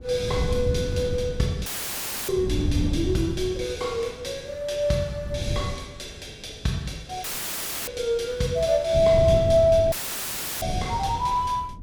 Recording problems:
wind noise; below 150 Hz, SNR 5 dB
dropout; at 1.5 s for 0.5 s, at 7 s for 0.5 s and at 10 s for 0.5 s; filled with static

